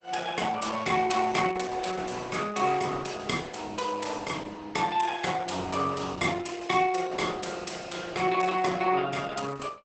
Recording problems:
lossy compression; Opus, log-spectral distance 6 dB, nothing above 8 kHz

